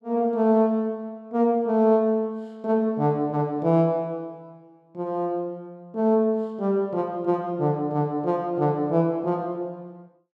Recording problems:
none

